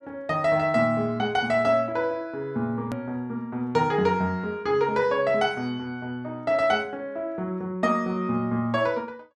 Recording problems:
edit click; at 3 s

